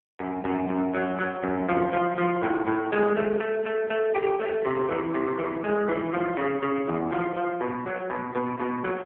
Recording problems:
telephone audio; 190 Hz to 3.2 kHz, AMR-NB

